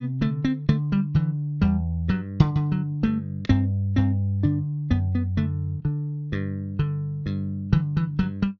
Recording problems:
treble cut off; nothing above 6.8 kHz

